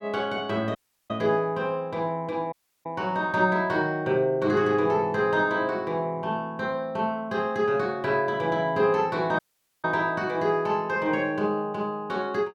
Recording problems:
audio cutting out; at 1 s, at 2.5 s and at 9.5 s

